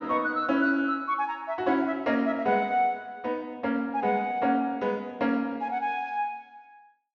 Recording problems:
low-pass filter; nothing above 7 kHz

